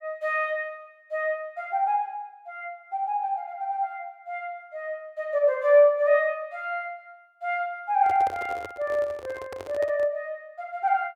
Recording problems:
microphone handling noise; from 8 to 10 s; peak -7 dB vs average level

